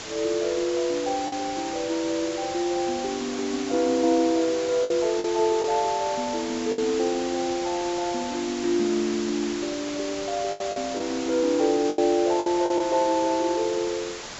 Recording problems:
low-pass filter; nothing above 7.6 kHz
background hiss; slope -1 dB per octave, SNR 10 dB
packet loss; 4% of the sound replaced, filled with the last packet

